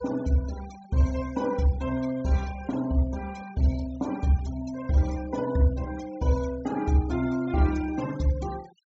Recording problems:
low-pass filter; nothing above 7.6 kHz
noise reduction artefacts; signal-to-artefact ratio 19 dB

